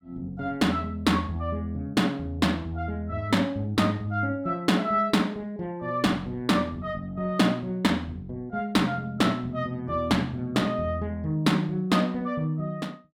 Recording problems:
none

